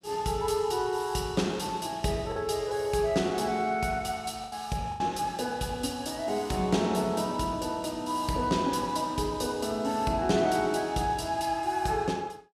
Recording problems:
packet loss; 1.6% of the sound replaced, filled with the last packet

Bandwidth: 15.5 kHz